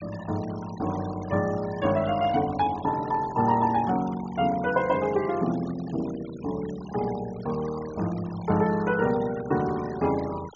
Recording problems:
treble cut off; nothing above 6.8 kHz
noise reduction artefacts; signal-to-artefact ratio 17 dB

